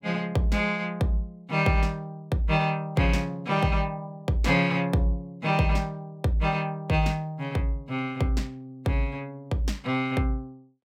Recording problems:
none

